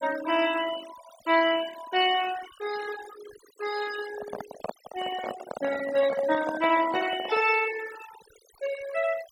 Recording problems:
noise reduction artefacts; signal-to-artefact ratio 13 dB
handling noise; from 4 to 7.5 s; peak -2 dB vs average level

